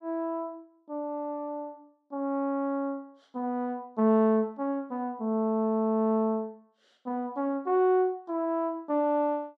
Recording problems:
none

